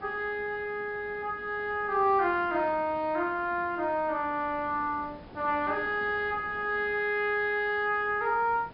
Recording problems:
treble cut off; nothing above 5.5 kHz
background hiss; slope -7 dB per octave, SNR 21 dB

